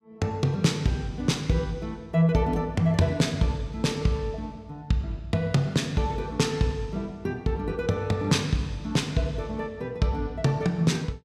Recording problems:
none

